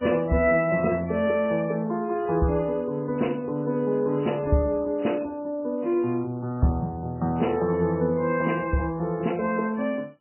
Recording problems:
lossy codec; MP3, log-spectral distance 2 dB, nothing above 2.9 kHz

